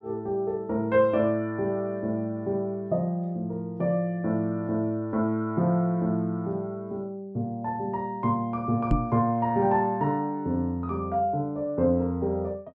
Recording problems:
microphone thump; at 9 s; peak +6 dB vs average level

